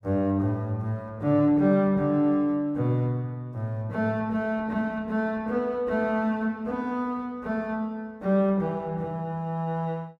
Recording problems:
none

